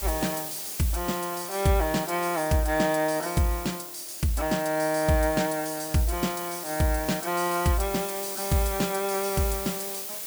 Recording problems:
background hiss; slope 0 dB per octave, SNR 7 dB

